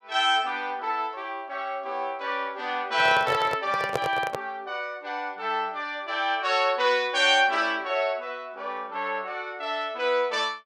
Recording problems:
handling noise; from 3 to 4.5 s; peak +2 dB vs average level

